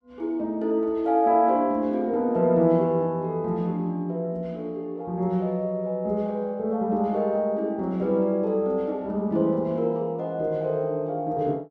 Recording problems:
none

